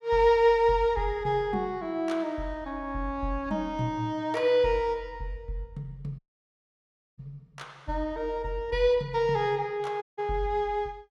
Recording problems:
dropout; at 6 s for 1 s and at 10 s

